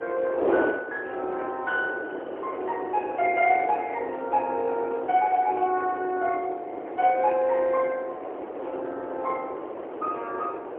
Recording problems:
phone line; 300 Hz to 3.4 kHz, AMR-NB, then MP3
wind noise; below 690 Hz, SNR 7 dB

